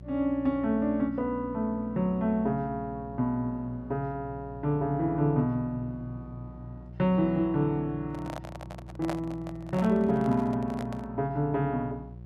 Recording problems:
hum; 60 Hz, harmonics up to 540 Hz, SNR 15 dB
handling noise; from 8 to 11 s; peak -2 dB vs average level

